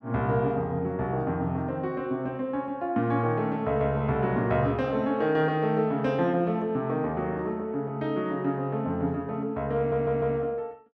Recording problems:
stutter; at 10 s

